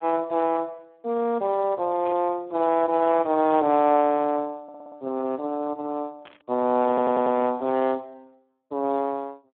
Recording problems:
phone line; 190 Hz to 3.5 kHz, Speex
burst of static; at 2 s, at 3.5 s and at 6 s; peak -12 dB vs average level
audio stuttering; at 4.5 s and at 7 s

